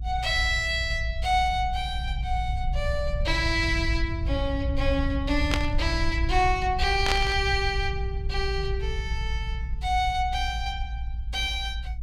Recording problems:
rumble; below 70 Hz, SNR 4 dB
static burst; at 5.5 s and at 7 s; peak +5 dB vs average level

